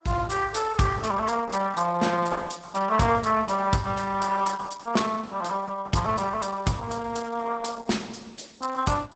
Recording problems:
lossy compression; Opus, log-spectral distance 5 dB, nothing above 8 kHz

